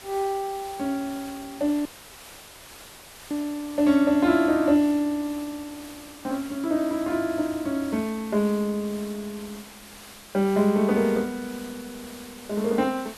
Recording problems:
background hiss; slope -2 dB per octave, SNR 18 dB
dropout; at 2 s for 1.5 s

